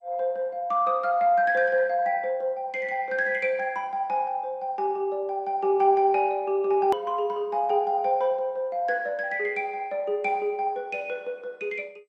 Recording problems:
lossy codec; MP2, log-spectral distance 2 dB
edit click; at 7 s

